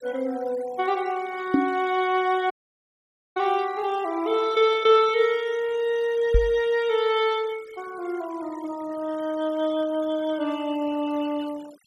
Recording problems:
noise reduction artefacts; signal-to-artefact ratio 21 dB
microphone bump; at 1.5 s and at 6.5 s; peak +7 dB vs average level
audio cutting out; at 2.5 s for 1 s

